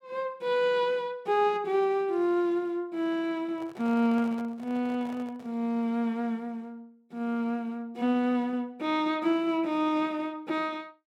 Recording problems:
handling noise; from 3.5 to 5.5 s; peak -12 dB vs average level

